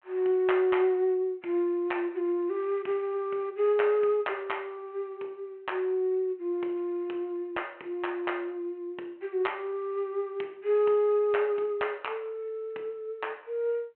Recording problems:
phone line; 280 Hz to 3.2 kHz, G.726

